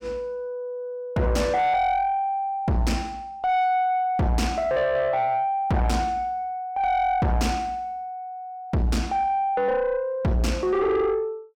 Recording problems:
distorted audio; soft clipping, signal-to-distortion ratio 7 dB

